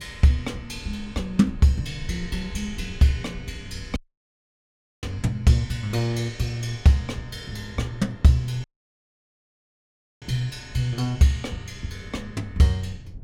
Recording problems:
rumble; below 110 Hz, SNR 19 dB
wind on the microphone; below 300 Hz, SNR 27 dB
dropout; at 4 s for 1 s and at 8.5 s for 1.5 s

